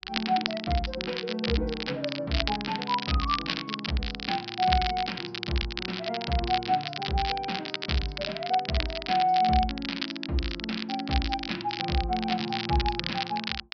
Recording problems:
treble missing; nothing above 5.5 kHz
crackle; vinyl, SNR 4 dB

